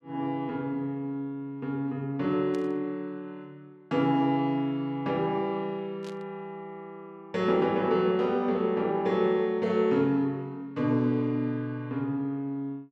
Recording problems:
burst of static; at 2.5 s and at 6 s; peak -15 dB vs average level

